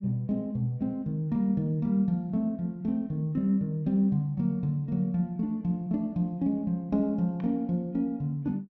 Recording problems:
none

